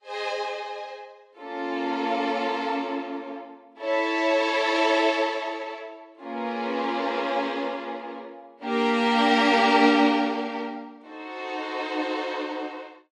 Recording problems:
lossy codec; AAC, log-spectral distance 2 dB

